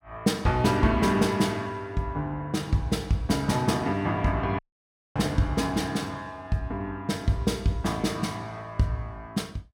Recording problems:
dropout; at 4.5 s for 0.5 s

